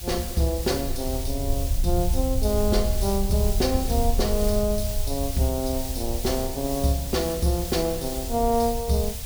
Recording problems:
background hiss; SNR 8 dB
rumble; below 74 Hz, SNR 5 dB

